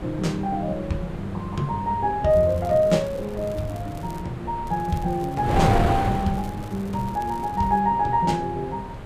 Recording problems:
wind on the microphone; below 630 Hz, SNR 7 dB
crackling; from 2.5 to 4 s and from 4.5 to 8 s; loose cable, SNR 26 dB

